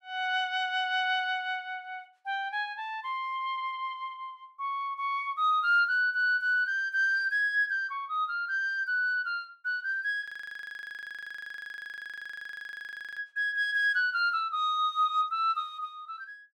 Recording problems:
frozen audio; at 10 s for 3 s

